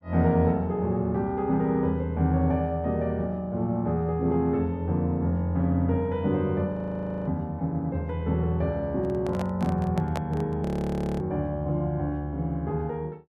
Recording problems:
audio freezing; at 6.5 s for 0.5 s and at 11 s for 0.5 s
microphone handling noise; from 9 to 11 s; peak -1 dB vs average level

